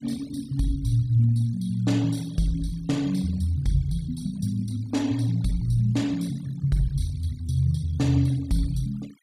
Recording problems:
denoising artefacts; signal-to-artefact ratio 23 dB

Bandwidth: 15 kHz